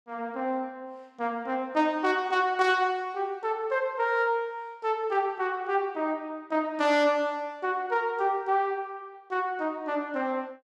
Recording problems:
none

